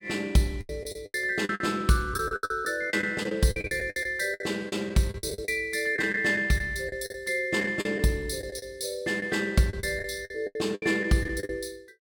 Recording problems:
lost packets; 15% of the sound replaced, filled with the last packet

